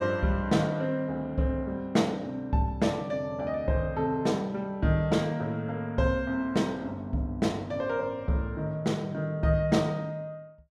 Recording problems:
none

